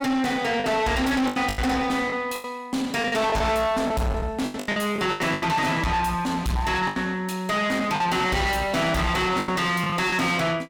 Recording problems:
distorted audio; soft clipping, signal-to-distortion ratio 5 dB
packet loss; 10% of the sound replaced, filled with the last packet

